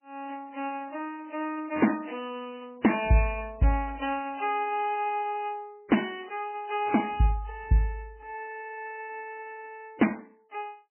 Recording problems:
lossy compression; MP3, log-spectral distance 4 dB, nothing above 2.5 kHz

